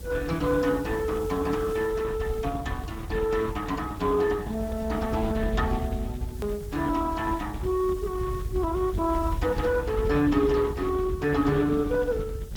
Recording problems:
codec artefacts; Speex, log-spectral distance 2 dB
electrical hum; 50 Hz, harmonics up to 600 Hz, SNR 24 dB
hiss; SNR 23 dB
rumble; below 110 Hz, SNR 8 dB
edit click; at 6.5 s

